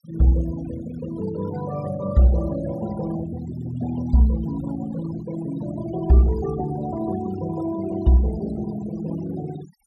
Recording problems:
noise reduction artefacts; signal-to-artefact ratio 16 dB

